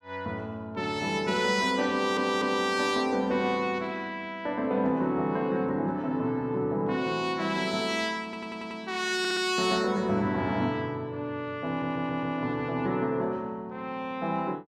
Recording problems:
audio stuttering; 4 times, first at 2 s

